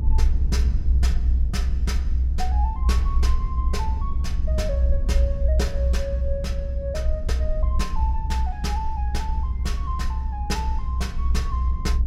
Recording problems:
rumble; below 64 Hz, strongest tone 62 Hz, SNR -8 dB

